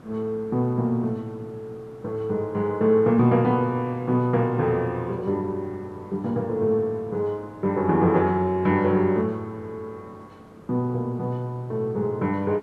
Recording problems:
background hiss; SNR 23 dB

